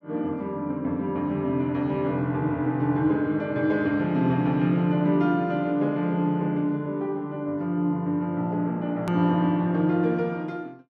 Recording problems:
edit click; at 9 s

